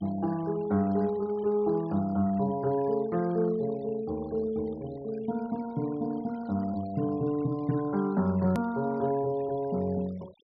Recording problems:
treble cut off; nothing above 5.5 kHz
denoising artefacts; signal-to-artefact ratio 23 dB
edit click; at 8.5 s

